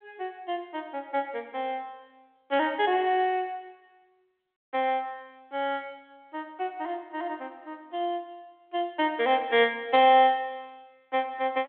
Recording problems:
telephone audio; 260 Hz to 3.5 kHz, G.726

